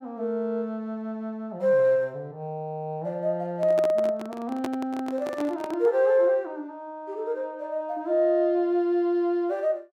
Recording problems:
microphone handling noise; from 3.5 to 6 s; peak -2 dB vs average level

